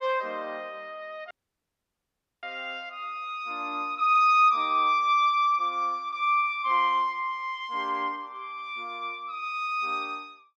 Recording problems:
dropout; at 1.5 s for 1 s

